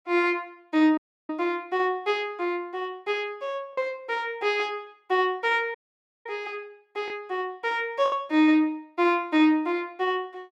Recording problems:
packet loss; 1.4% of the sound replaced, filled with the last packet
dropout; at 1 s and at 6 s for 0.5 s

